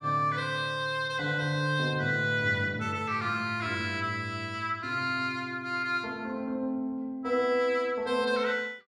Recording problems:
none

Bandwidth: 14.5 kHz